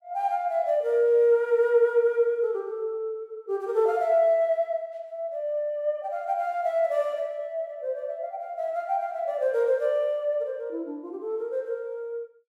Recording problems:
none

